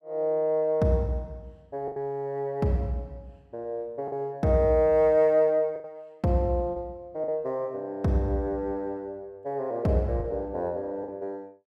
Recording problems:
packet loss; 3% of the sound replaced, filled with the last packet

